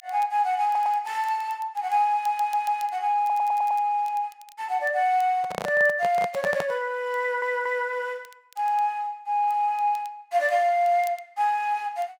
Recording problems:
crackle; vinyl, SNR 28 dB
audio stuttering; 4 times, first at 0.5 s
handling noise; from 5.5 to 7 s; peak -1 dB vs average level

